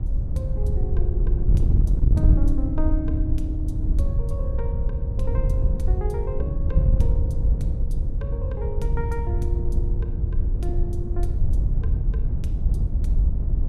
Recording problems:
wind noise; below 78 Hz, SNR -10 dB

